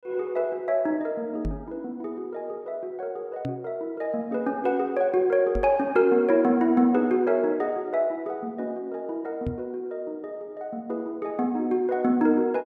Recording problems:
knock on the microphone; 4 times, first at 1.5 s; peak -2 dB vs average level

